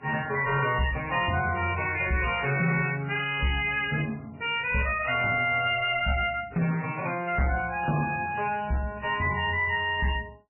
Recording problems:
lossy compression; MP3, then AAC, log-spectral distance 5 dB, nothing above 2.5 kHz
distortion; soft clipping, signal-to-distortion ratio 11 dB

